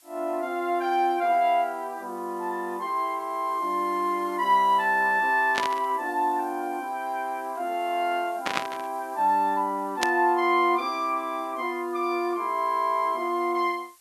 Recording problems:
background hiss; slope +2 dB per octave, SNR 27 dB
burst of static; at 5.5 s, at 8.5 s and at 10 s; peak +4 dB vs average level

